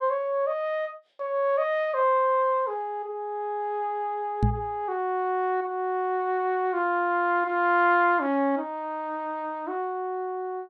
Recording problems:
microphone thump; at 4.5 s; peak +6 dB vs average level

